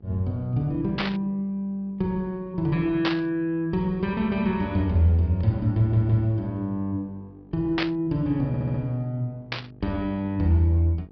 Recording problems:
treble cut off; nothing above 5.5 kHz
hum; 50 Hz, harmonics up to 900 Hz, SNR 27 dB
static burst; 4 times, first at 1 s; peak +2 dB vs average level
audio stuttering; at 6 s and at 8.5 s

